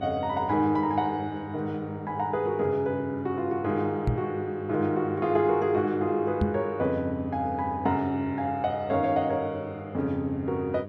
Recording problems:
hum; 50 Hz, harmonics up to 1.2 kHz, SNR 13 dB
microphone bump; at 4 s and at 6.5 s; peak +5 dB vs average level

